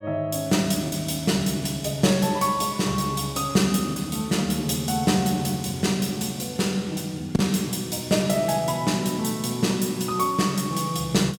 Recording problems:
packet loss; 1.1% of the sound replaced, filled with the last packet

